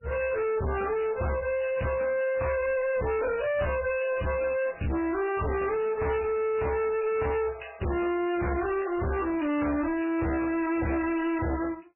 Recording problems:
codec artefacts; MP3, log-spectral distance 4 dB, nothing above 2.7 kHz
distortion; hard clipping, uneven, signal-to-distortion ratio 5 dB

